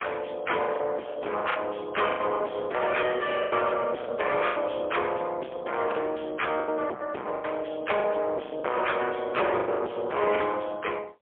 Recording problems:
phone line; 260 Hz to 3.4 kHz, AMR-NB, then MP3
distortion; soft clipping, signal-to-distortion ratio 7 dB
packet loss; 9% of the sound replaced, filled with the last packet

